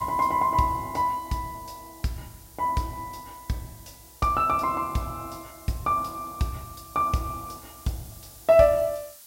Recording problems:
background hiss; slope +2 dB per octave, SNR 21 dB

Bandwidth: 16 kHz